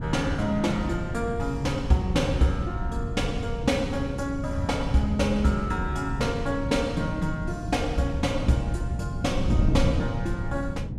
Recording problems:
wind noise; below 150 Hz, SNR 4 dB

